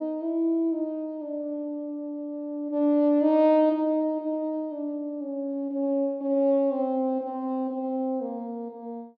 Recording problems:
none

